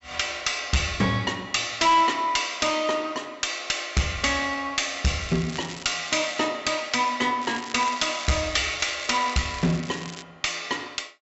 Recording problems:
treble cut off; nothing above 7.7 kHz
distortion; hard clipping, uneven, signal-to-distortion ratio 9 dB
crackle; from 5 to 6.5 s and from 7.5 to 10 s; loose cable, SNR 14 dB

